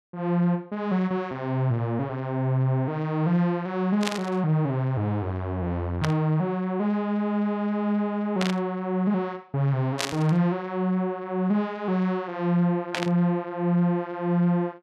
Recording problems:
burst of static; 5 times, first at 4 s; peak +2 dB vs average level

